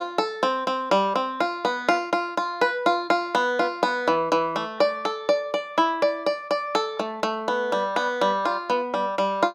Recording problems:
none

